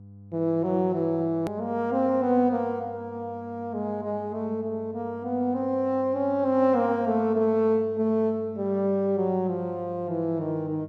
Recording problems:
hum; 50 Hz, harmonics up to 500 Hz, SNR 20 dB
click at an edit; at 1.5 s

